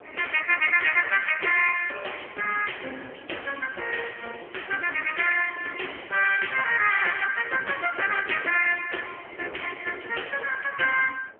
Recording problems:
telephone audio; 300 Hz to 3.1 kHz, AMR-NB
wind noise; below 860 Hz, SNR 23 dB
crackle; from 3.5 to 7 s and at 8 s; loose cable, SNR 27 dB

